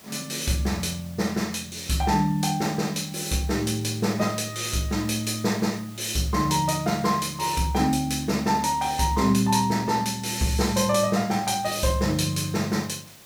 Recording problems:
hiss; slope -2 dB per octave, SNR 22 dB

